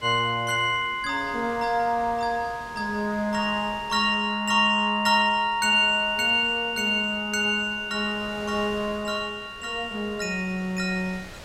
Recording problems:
wind noise; below 3.1 kHz, SNR 21 dB

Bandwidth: 16 kHz